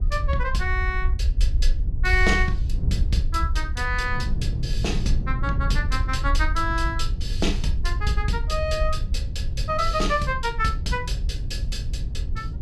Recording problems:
rumble; below 64 Hz, SNR 1 dB
wind on the microphone; below 180 Hz, SNR 8 dB

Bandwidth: 14.5 kHz